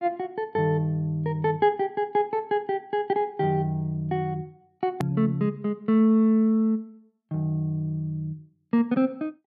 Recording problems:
edit click; at 5 s

